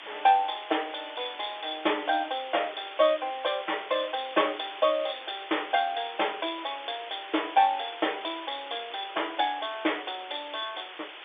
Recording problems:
phone line; 260 Hz to 3.6 kHz, G.711
background hiss; SNR 12 dB

